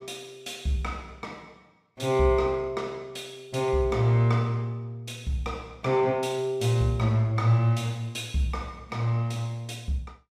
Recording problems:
none

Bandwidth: 15 kHz